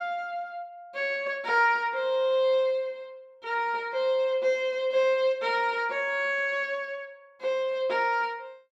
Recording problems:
none

